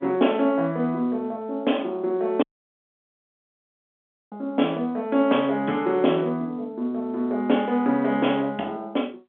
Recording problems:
telephone audio; 190 Hz to 3.6 kHz, G.711
dropout; at 2.5 s for 2 s

